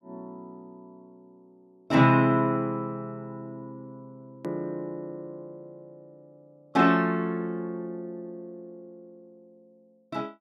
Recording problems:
hard cut with a click; at 4.5 s

